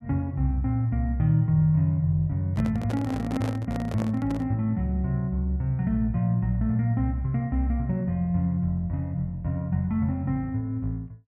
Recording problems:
handling noise; from 2.5 to 4.5 s; peak -4 dB vs average level

